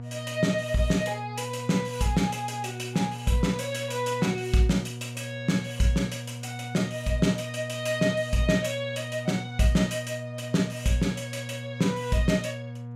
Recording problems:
mains hum; 60 Hz, harmonics up to 960 Hz, SNR 10 dB

